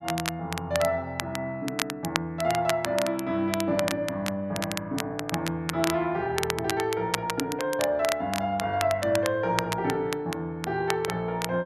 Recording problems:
crackle; vinyl, SNR 6 dB

